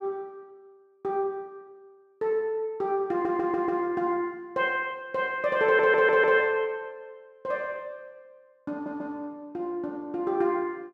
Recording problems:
stutter; at 3 s, at 5.5 s and at 8.5 s

